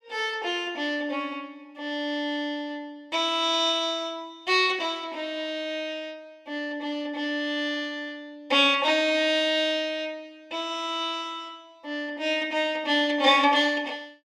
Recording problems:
none

